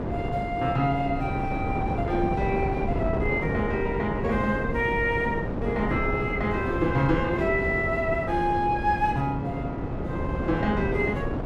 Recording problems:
wind on the microphone; below 440 Hz, SNR 3 dB

